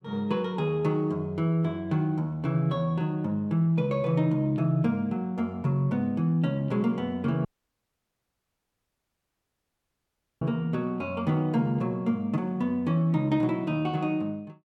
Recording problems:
audio cutting out; at 7.5 s for 3 s

